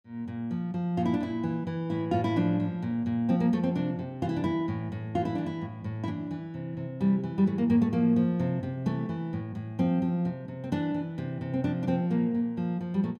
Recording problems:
none

